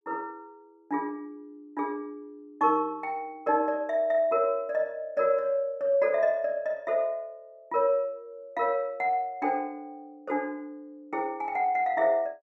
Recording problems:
none

